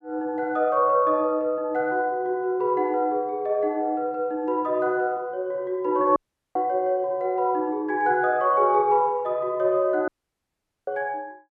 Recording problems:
dropout; at 6 s and at 10 s for 1 s

